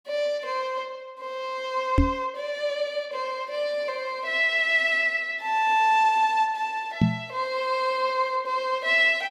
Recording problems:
microphone thump; at 2 s and at 7 s; peak +7 dB vs average level

